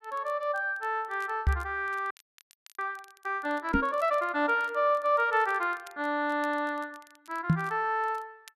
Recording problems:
crackle; vinyl, SNR 28 dB
microphone bump; at 1.5 s, at 3.5 s and at 7.5 s; peak +9 dB vs average level
frozen audio; at 2 s for 0.5 s

